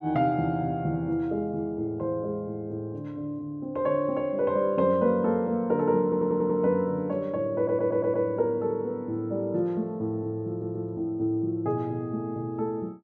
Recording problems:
stutter; at 6 s, at 7.5 s and at 10 s

